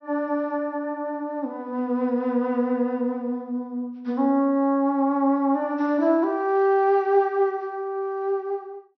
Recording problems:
treble cut off; nothing above 5.9 kHz

